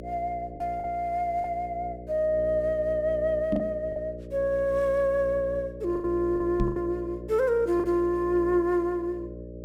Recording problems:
electrical hum; 60 Hz, harmonics up to 600 Hz, SNR 12 dB
lost packets; 5% of the sound replaced, filled with the last packet
microphone bump; at 3.5 s and at 6.5 s; peak +3 dB vs average level

